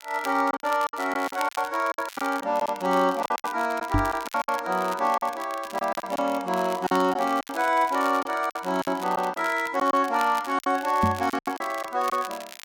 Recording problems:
crackle; vinyl, SNR 17 dB
packet loss; 12% of the sound replaced, filled with silence
microphone bump; at 4 s and at 11 s; peak +5 dB vs average level

